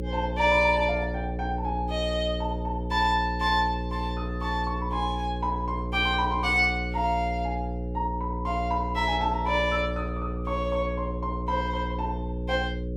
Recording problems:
hum; 60 Hz, harmonics up to 540 Hz, SNR 5 dB

